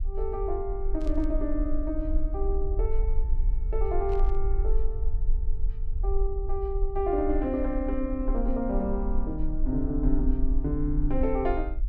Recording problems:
rumble; below 44 Hz, strongest tone 18 Hz, SNR 1 dB
burst of static; at 1 s and at 4 s; peak -15 dB vs average level

